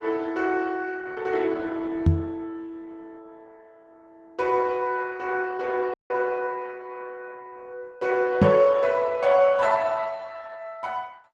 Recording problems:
lossy compression; Opus, log-spectral distance 3 dB
microphone thump; at 2 s and at 8.5 s; peak +10 dB vs average level
dropout; at 6 s

